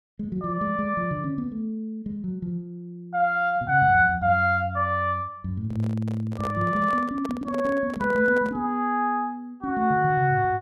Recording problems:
handling noise; from 5.5 to 8.5 s; peak -6 dB vs average level

